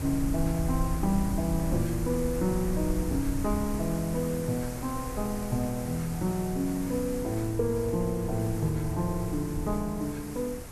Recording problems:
background hiss; SNR 11 dB
low-frequency rumble; below 82 Hz, SNR 9 dB
wind noise; below 120 Hz, SNR 16 dB

